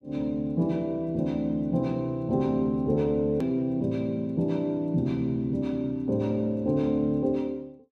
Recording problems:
hard cut with a click; at 3.5 s

